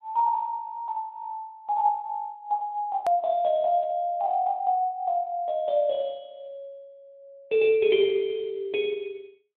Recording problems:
phone line; 86 Hz to 3.5 kHz, Speex
hard cut with a click; at 3 s

